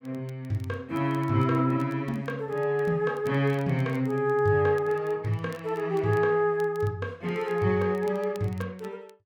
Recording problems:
crackle; vinyl, SNR 30 dB

